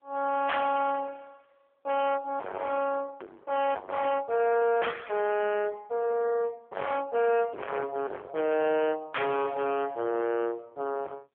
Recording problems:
telephone audio; 300 Hz to 2.7 kHz, AMR-NB
distorted audio; hard clipping, signal-to-distortion ratio 4 dB

